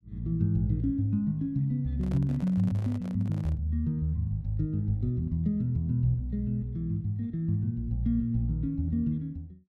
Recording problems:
microphone handling noise; from 2 to 3.5 s; peak -11 dB vs average level

